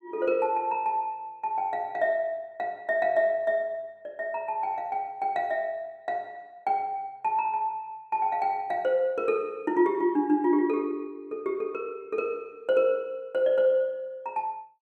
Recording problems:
none

